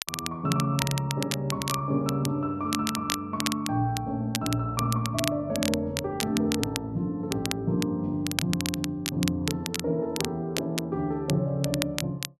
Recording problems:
crackling; vinyl, SNR 5 dB

